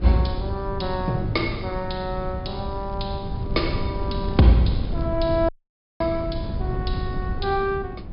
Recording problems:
treble cut off; nothing above 5.5 kHz
wind on the microphone; below 150 Hz, SNR 5 dB
crackling; from 2.5 to 5 s; loose cable, SNR 30 dB
audio cutting out; at 5.5 s for 0.5 s

